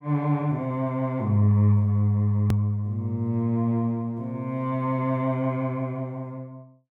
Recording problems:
click at an edit; at 2.5 s

